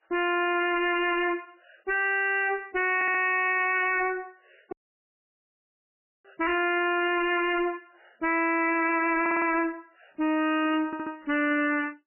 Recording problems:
lossy compression; MP3, log-spectral distance 7 dB, nothing above 2.4 kHz
distortion; hard clipping, signal-to-distortion ratio 4 dB
audio stuttering; at 3 s, at 9 s and at 11 s
audio cutting out; at 4.5 s for 1.5 s

